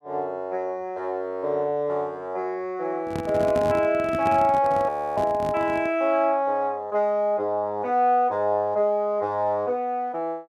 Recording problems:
handling noise; from 3 to 6 s; peak -2 dB vs average level
frozen audio; at 5 s

